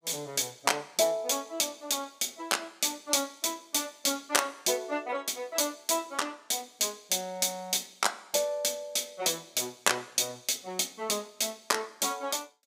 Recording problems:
none

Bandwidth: 15.5 kHz